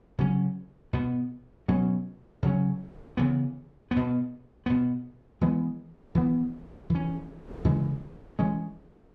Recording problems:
wind on the microphone; below 430 Hz, SNR 23 dB

